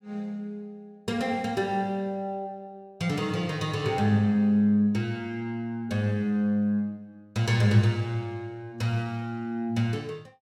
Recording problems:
none

